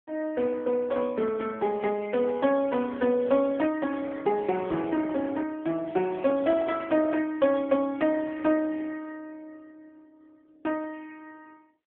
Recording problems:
telephone audio; 150 Hz to 3.4 kHz, AMR-NB

